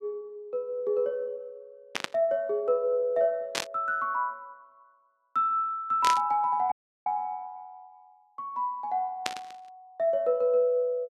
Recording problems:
static burst; 4 times, first at 2 s; peak +3 dB vs average level
audio cutting out; at 6.5 s

